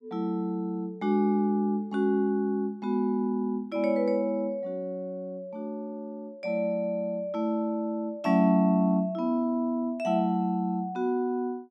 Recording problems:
none

